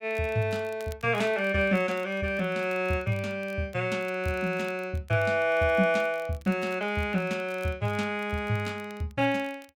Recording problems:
crackling; vinyl, SNR 27 dB

